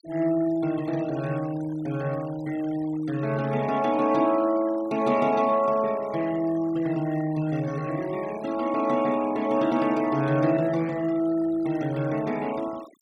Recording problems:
denoising artefacts; signal-to-artefact ratio 20 dB

